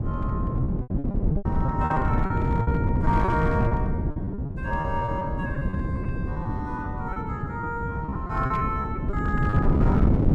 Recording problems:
distorted audio; hard clipping, uneven, signal-to-distortion ratio 12 dB
mains hum; 60 Hz, harmonics up to 1.7 kHz, SNR 23 dB
wind noise; below 220 Hz, SNR -4 dB
packet loss; 13% of the sound replaced, filled with repeated pitch periods

